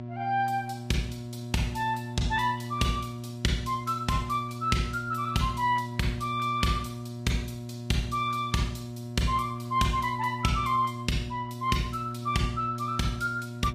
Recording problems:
codec artefacts; Vorbis, log-spectral distance 2 dB, nothing above 15.1 kHz
hum; 60 Hz, harmonics up to 960 Hz, SNR 8 dB

